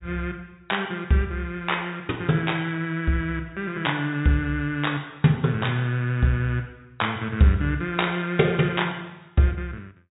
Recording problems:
treble cut off; nothing above 4 kHz

